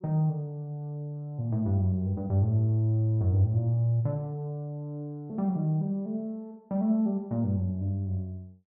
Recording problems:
low-pass filter; nothing above 4 kHz

